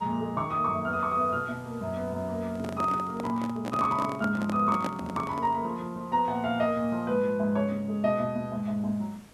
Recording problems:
hiss; slope -4 dB per octave, SNR 27 dB
handling noise; from 2.5 to 5.5 s; peak -1 dB vs average level

